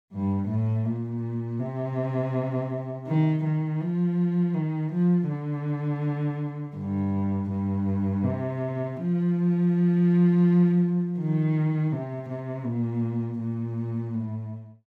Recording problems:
none

